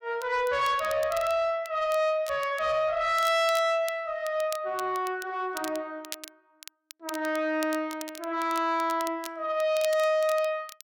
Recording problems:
distorted audio; soft clipping, signal-to-distortion ratio 12 dB
crackle; vinyl, SNR 17 dB

